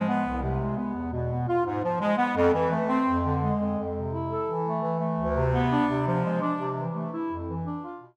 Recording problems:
none

